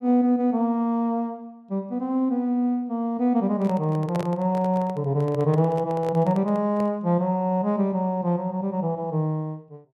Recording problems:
microphone handling noise; from 3.5 to 7 s; peak -5 dB vs average level

